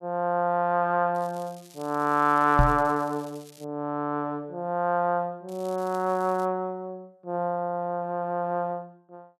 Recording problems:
crackling; from 1 to 3.5 s and at 5.5 s; loose cable, SNR 25 dB
microphone thump; at 2.5 s; peak +7 dB vs average level

